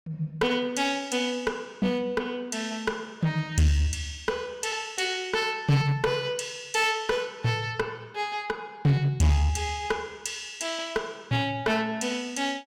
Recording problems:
distortion; hard clipping, uneven, signal-to-distortion ratio 9 dB

